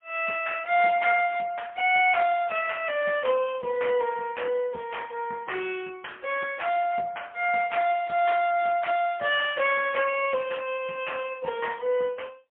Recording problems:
telephone audio; 220 Hz to 3.3 kHz, AMR-NB, then MP3

